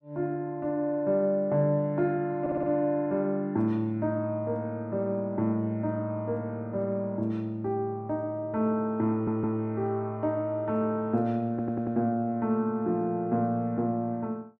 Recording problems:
audio stuttering; at 2.5 s, at 9 s and at 12 s

